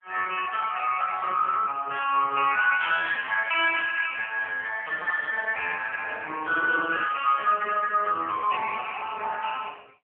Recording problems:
telephone audio; 370 Hz to 3.3 kHz, AMR-NB

